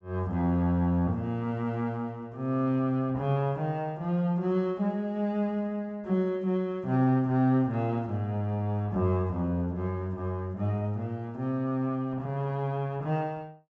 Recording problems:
treble cut off; nothing above 8 kHz

